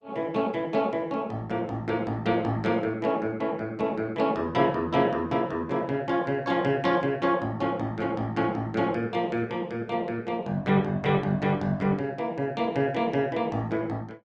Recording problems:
codec artefacts; Opus, log-spectral distance 2 dB

